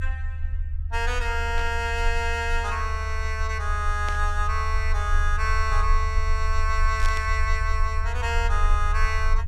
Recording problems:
low-frequency rumble; below 76 Hz, strongest tone 26 Hz, SNR 1 dB
static burst; at 1.5 s, at 4 s and at 7 s; peak -4 dB vs average level

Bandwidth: 15 kHz